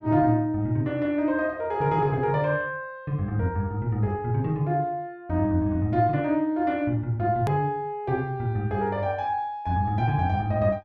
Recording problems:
edit click; at 7.5 s

